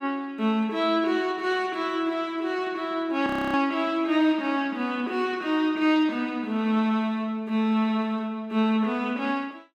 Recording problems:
frozen audio; at 3.5 s

